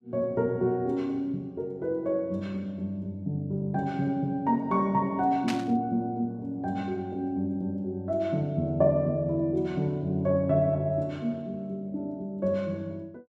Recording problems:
static burst; at 5.5 s; peak -1 dB vs average level

